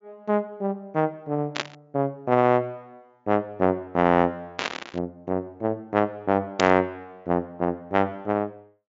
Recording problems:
low-pass filter; nothing above 7.3 kHz
burst of static; at 1.5 s, at 4.5 s and at 6.5 s; peak +2 dB vs average level

